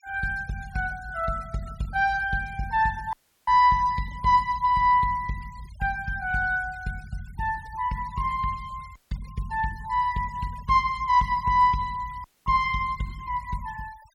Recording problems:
noise reduction artefacts; signal-to-artefact ratio 24 dB
dropout; at 3 s, at 9 s and at 12 s

